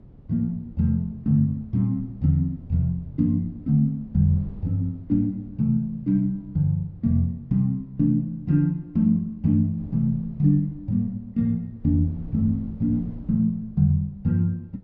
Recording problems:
wind on the microphone; below 170 Hz, SNR 21 dB

